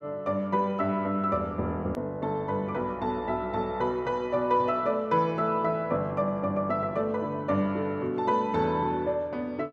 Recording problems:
click at an edit; at 2 s

